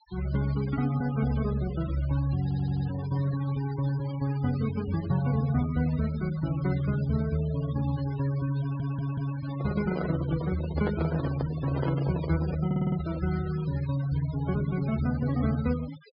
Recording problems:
low-pass filter; nothing above 5.1 kHz
denoising artefacts; signal-to-artefact ratio 16 dB
audio stuttering; at 2.5 s, at 8.5 s and at 13 s
handling noise; from 9.5 to 13 s; peak 0 dB vs average level

